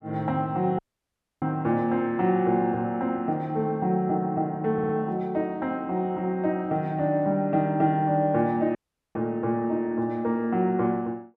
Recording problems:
dropout; at 1 s for 0.5 s and at 9 s
audio stuttering; at 4.5 s

